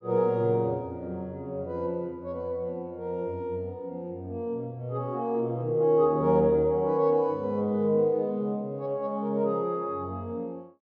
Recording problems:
none

